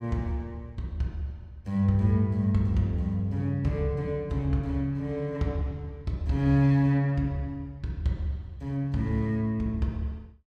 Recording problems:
none

